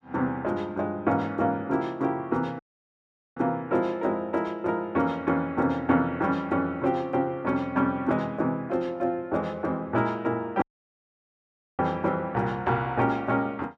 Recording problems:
dropout; at 2.5 s for 1 s and at 11 s for 1 s

